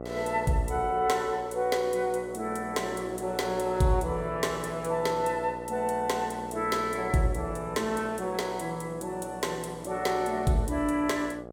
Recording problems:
hum; 60 Hz, harmonics up to 1.4 kHz, SNR 12 dB

